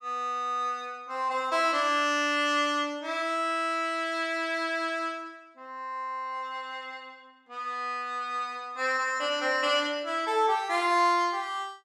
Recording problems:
none

